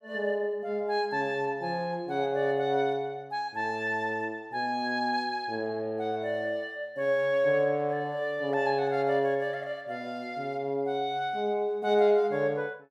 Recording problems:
none

